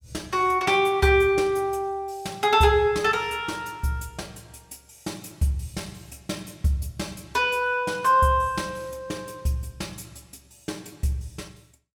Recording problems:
none

